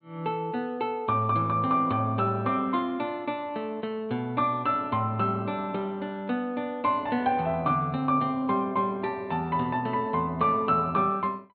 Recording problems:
low-pass filter; nothing above 4.2 kHz

